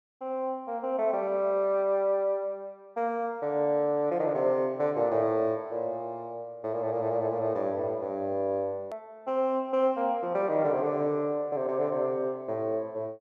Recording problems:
click at an edit; at 9 s

